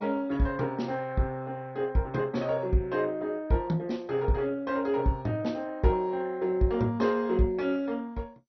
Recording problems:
lossy compression; MP2, log-spectral distance 2 dB, nothing above 6 kHz

